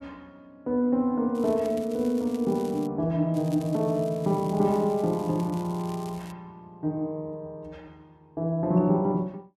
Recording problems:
crackling; from 1.5 to 3 s and from 3.5 to 6.5 s; loose cable, SNR 23 dB

